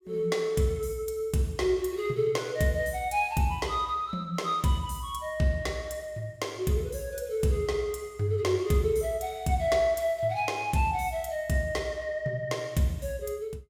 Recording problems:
none

